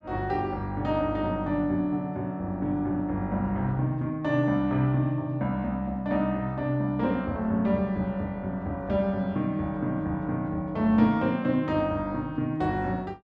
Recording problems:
none

